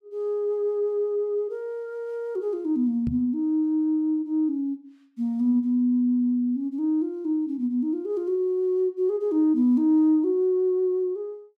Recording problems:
knock on the microphone; at 3 s; peak -2 dB vs average level

